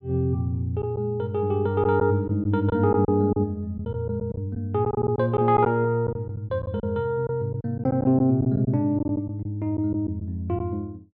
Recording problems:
packet loss; 7% of the sound replaced, filled with silence

